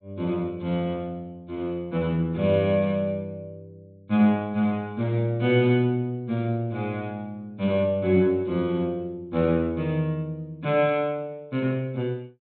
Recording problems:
treble cut off; nothing above 4 kHz

